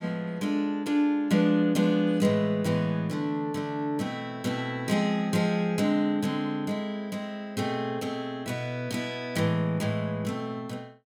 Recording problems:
none

